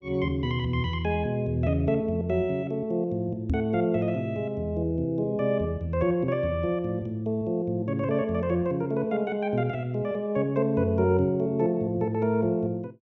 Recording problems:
knock on the microphone; at 3.5 s; peak +3 dB vs average level

